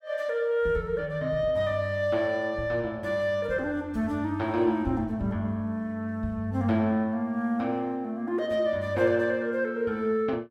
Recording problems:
none

